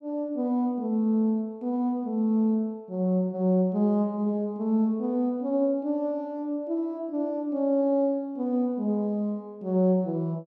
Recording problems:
none

